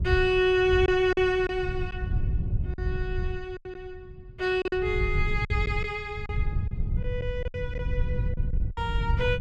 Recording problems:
wind on the microphone; below 100 Hz, SNR 4 dB
lost packets; 7% of the sound replaced, filled with silence

